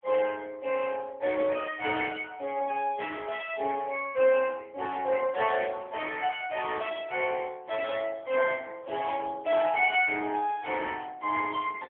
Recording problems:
telephone audio; 280 Hz to 3.3 kHz, AMR-NB

